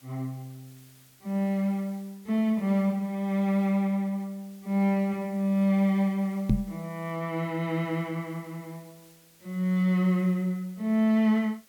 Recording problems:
hiss; slope 0 dB per octave, SNR 28 dB
knock on the microphone; at 6.5 s; peak +7 dB vs average level

